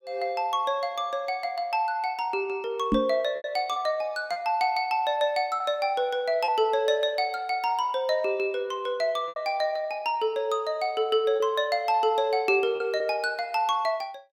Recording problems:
lost packets; 3% of the sound replaced, filled with repeated pitch periods
knock on the microphone; at 3 s; peak +5 dB vs average level

